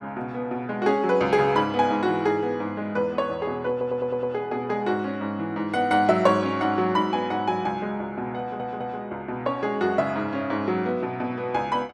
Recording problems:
audio stuttering; at 3.5 s and at 8.5 s

